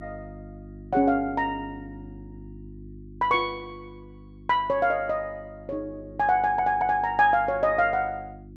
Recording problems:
hum; 50 Hz, harmonics up to 350 Hz, SNR 19 dB
audio stuttering; at 6.5 s

